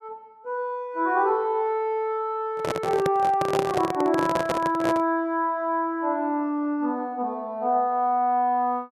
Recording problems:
microphone handling noise; from 2.5 to 5 s; peak +2 dB vs average level

